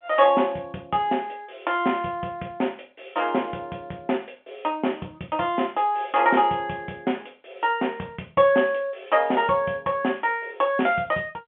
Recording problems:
telephone audio; 190 Hz to 3.3 kHz, G.711

